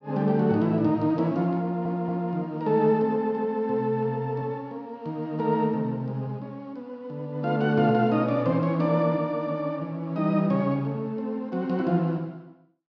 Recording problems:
audio stuttering; at 1.5 s

